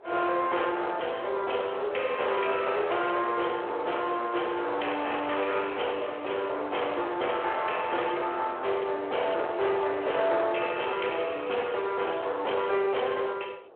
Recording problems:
telephone audio; 370 Hz to 3.3 kHz, Speex
distortion; hard clipping, uneven, signal-to-distortion ratio 8 dB
wind on the microphone; below 860 Hz, SNR 19 dB

